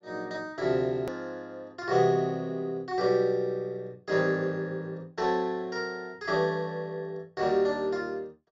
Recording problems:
treble missing; nothing above 8 kHz
click at an edit; at 1 s

